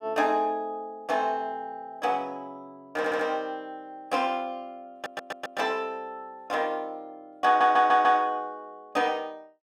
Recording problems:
audio stuttering; at 3 s, at 5 s and at 7.5 s

